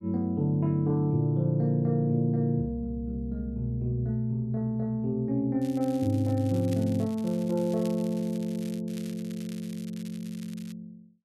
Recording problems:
crackling; from 5.5 to 9 s and from 9 to 11 s; loose cable, SNR 21 dB

